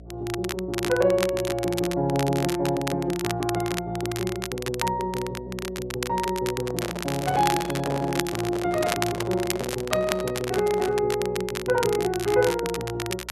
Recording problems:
hum; 60 Hz, harmonics up to 720 Hz, SNR 20 dB
crackle; vinyl, SNR 8 dB
handling noise; from 6.5 to 11 s; peak -1 dB vs average level

